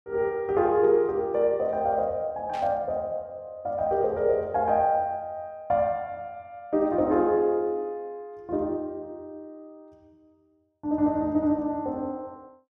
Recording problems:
burst of static; at 2.5 s; peak -13 dB vs average level

